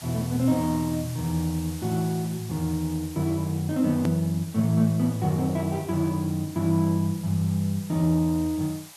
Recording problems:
background hiss; SNR 17 dB
edit click; at 4 s

